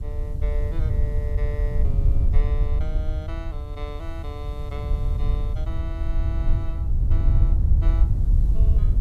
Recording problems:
hiss; SNR 23 dB
wind noise; below 72 Hz, SNR -15 dB

